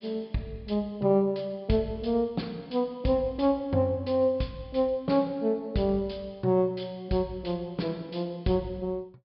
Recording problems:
low-pass filter; nothing above 5.1 kHz

